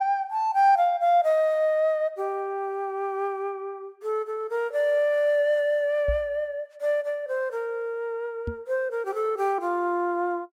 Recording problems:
microphone bump; at 6 s and at 8.5 s; peak -1 dB vs average level

